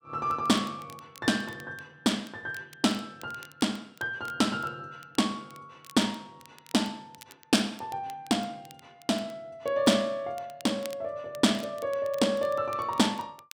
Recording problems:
crackle; vinyl, SNR 23 dB

